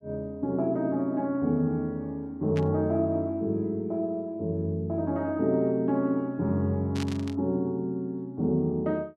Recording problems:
static burst; at 2.5 s and at 7 s; peak -7 dB vs average level

